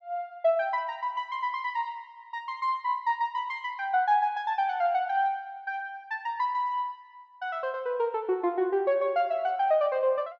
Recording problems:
none

